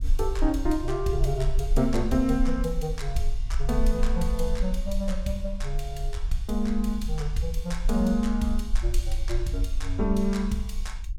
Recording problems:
rumble; below 44 Hz, strongest tone 22 Hz, SNR 3 dB

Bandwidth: 17 kHz